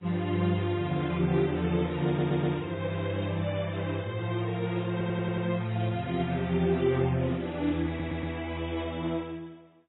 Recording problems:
lossy compression; MP3, then AAC, log-spectral distance 3 dB, nothing above 3.8 kHz
stutter; at 2 s, at 5 s and at 8 s

